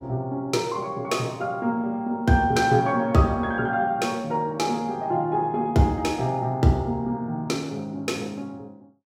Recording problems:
none

